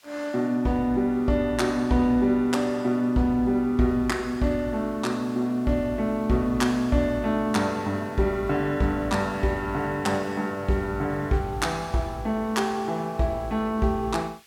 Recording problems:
hiss; SNR 28 dB

